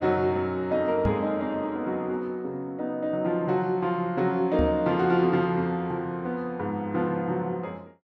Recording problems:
knock on the microphone; at 1 s and at 4.5 s; peak +3 dB vs average level

